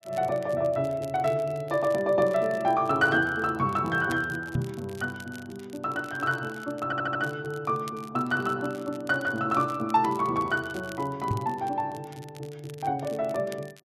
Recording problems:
crackling; vinyl, SNR 23 dB
knock on the microphone; at 4.5 s and at 11 s; peak +3 dB vs average level
stutter; at 7 s

